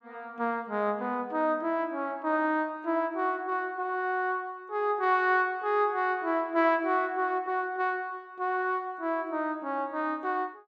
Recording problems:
none

